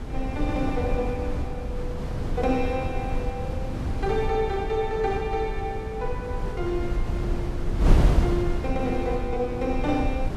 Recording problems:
wind noise; below 140 Hz, SNR 0 dB

